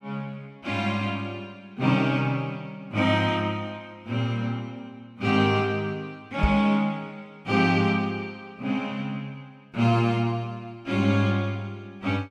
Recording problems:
knock on the microphone; at 6.5 s; peak +6 dB vs average level

